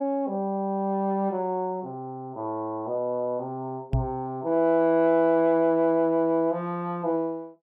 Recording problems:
microphone bump; at 4 s; peak +4 dB vs average level

